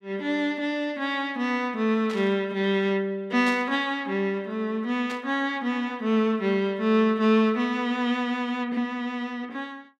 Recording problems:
burst of static; at 2 s, at 3.5 s and at 5 s; peak -7 dB vs average level

